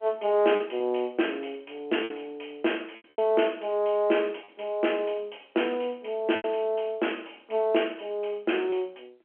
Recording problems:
telephone audio; 260 Hz to 3.2 kHz, G.711
lost packets; 4% of the sound replaced, filled with repeated pitch periods

